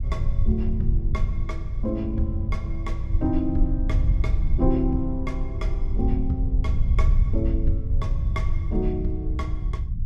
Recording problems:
low-frequency rumble; below 76 Hz, SNR -4 dB

